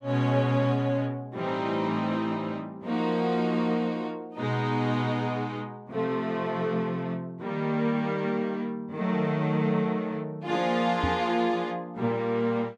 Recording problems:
knock on the microphone; at 11 s; peak +2 dB vs average level

